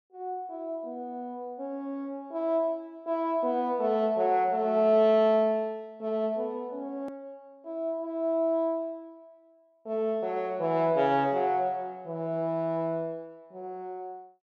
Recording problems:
hard cut with a click; at 7 s

